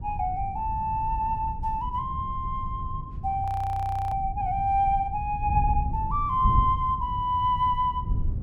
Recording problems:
wind noise; below 110 Hz, SNR 6 dB
audio freezing; at 3.5 s for 0.5 s

